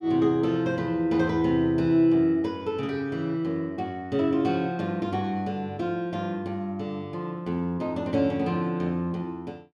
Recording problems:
none

